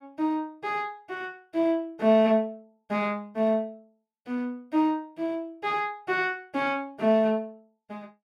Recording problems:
none

